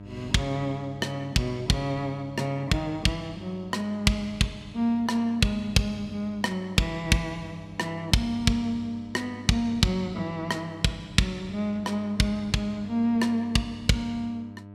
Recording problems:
hum; 50 Hz, harmonics up to 1.3 kHz, SNR 17 dB

